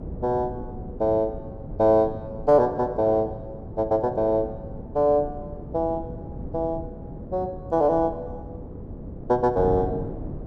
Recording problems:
wind on the microphone; below 300 Hz, SNR 13 dB

